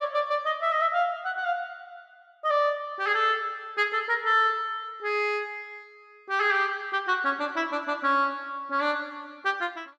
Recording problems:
none

